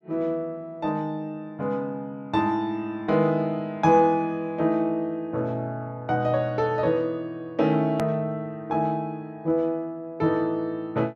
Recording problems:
edit click; at 8 s

